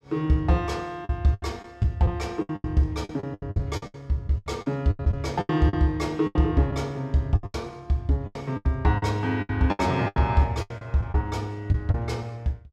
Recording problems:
packet loss; 15% of the sound replaced, filled with the last packet

